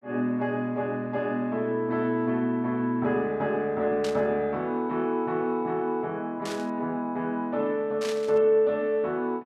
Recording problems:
static burst; at 4 s, at 6.5 s and at 8 s; peak -6 dB vs average level

